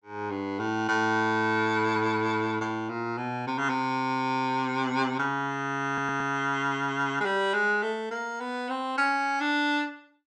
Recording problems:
audio stuttering; at 6 s

